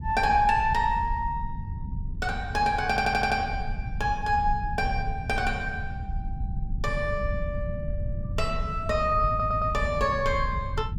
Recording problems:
rumble; below 110 Hz, SNR 7 dB
audio stuttering; at 3 s and at 9.5 s

